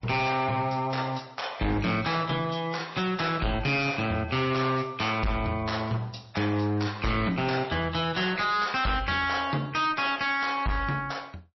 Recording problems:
lossy compression; MP3, log-spectral distance 5 dB, nothing above 5.7 kHz
distorted audio; hard clipping, signal-to-distortion ratio 8 dB

